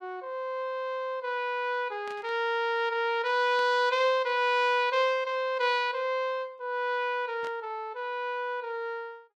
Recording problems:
burst of static; at 2 s, at 3.5 s and at 7.5 s; peak -13 dB vs average level

